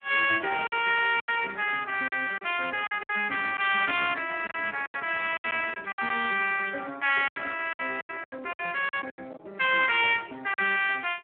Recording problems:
phone line; 300 Hz to 3.5 kHz, Speex
lost packets; 10% of the sound replaced, filled with silence

